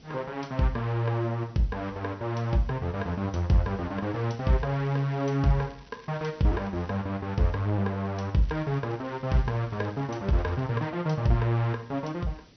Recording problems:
low-pass filter; nothing above 6 kHz
hiss; SNR 27 dB
crackle; from 4 to 7 s and from 8.5 to 11 s; loose cable, SNR 28 dB

